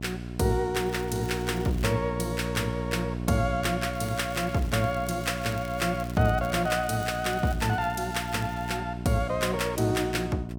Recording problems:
mains hum; 60 Hz, harmonics up to 780 Hz, SNR 7 dB
crackling; from 1 to 2 s and from 4 to 9 s; loose cable, SNR 20 dB

